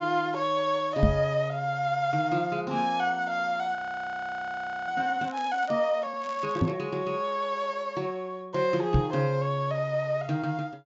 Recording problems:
low-pass filter; nothing above 8 kHz
microphone thump; at 1 s, at 6.5 s and at 9 s; peak +8 dB vs average level
audio freezing; at 4 s for 1 s
crackling; at 5 s and at 6 s; loose cable, SNR 24 dB

